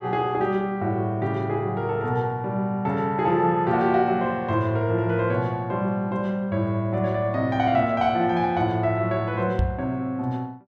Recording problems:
microphone thump; at 9.5 s; peak +3 dB vs average level

